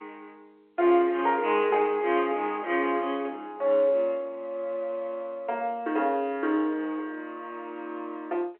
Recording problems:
telephone audio; 280 Hz to 3.3 kHz, G.711

